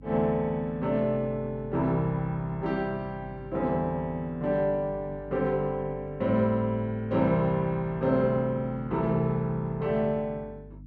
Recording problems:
hum; 50 Hz, harmonics up to 300 Hz, SNR 19 dB

